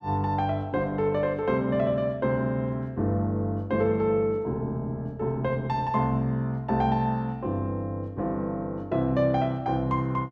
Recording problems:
none

